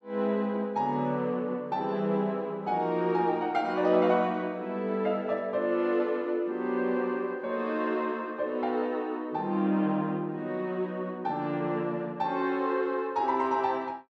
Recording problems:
none

